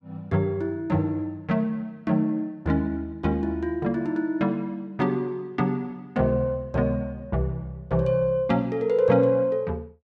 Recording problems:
none

